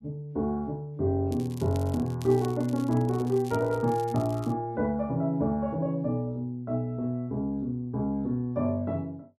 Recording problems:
crackle; from 1.5 to 4.5 s; loose cable, SNR 21 dB

